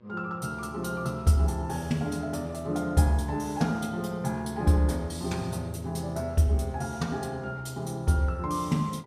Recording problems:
hum; 60 Hz, harmonics up to 1.7 kHz, SNR 29 dB

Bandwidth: 15.5 kHz